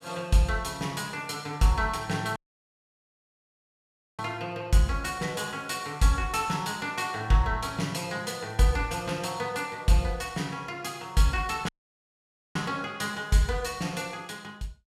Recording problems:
audio cutting out; at 2.5 s for 2 s and at 12 s for 1 s

